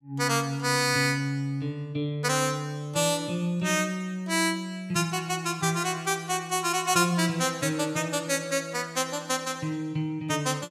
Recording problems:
none

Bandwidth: 14.5 kHz